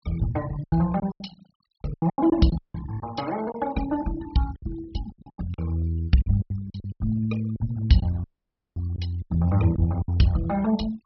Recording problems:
low-pass filter; nothing above 5.7 kHz
noise reduction artefacts; signal-to-artefact ratio 20 dB
packet loss; 13% of the sound replaced, filled with silence
dropout; at 2.5 s and at 8 s for 0.5 s

